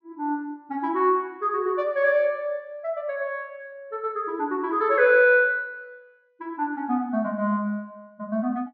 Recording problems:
low-pass filter; nothing above 6.6 kHz

